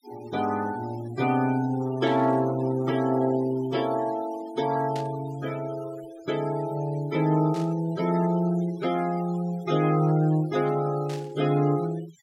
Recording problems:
denoising artefacts; signal-to-artefact ratio 18 dB
static burst; 4 times, first at 2 s; peak -11 dB vs average level

